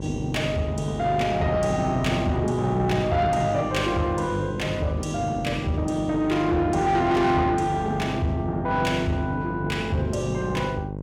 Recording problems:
distorted audio; soft clipping, signal-to-distortion ratio 11 dB
hum; 50 Hz, harmonics up to 1.1 kHz, SNR 9 dB

